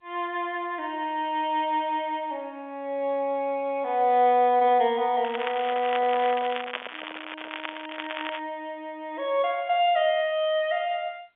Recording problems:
phone line; 240 Hz to 3.7 kHz, G.711
crackling; from 5 to 8.5 s; loose cable, SNR 10 dB
microphone handling noise; from 5.5 to 8 s; peak -11 dB vs average level

